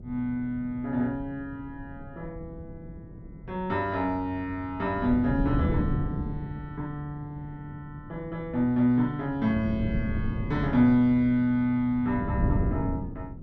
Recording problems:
wind noise; below 200 Hz, SNR 6 dB

